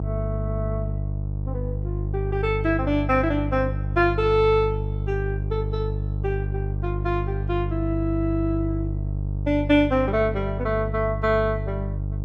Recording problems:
hum; 50 Hz, harmonics up to 450 Hz, SNR 3 dB

